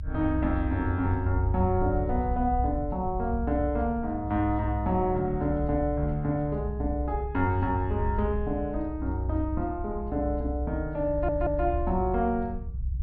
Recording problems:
treble missing; nothing above 5.5 kHz
low-frequency rumble; below 66 Hz, strongest tone 62 Hz, SNR 6 dB
stutter; at 11 s

